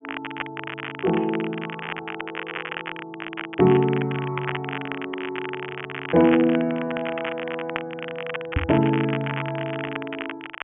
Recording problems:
treble cut off; nothing above 3.2 kHz
crackling; vinyl, SNR 9 dB
microphone bump; at 8.5 s; peak +4 dB vs average level

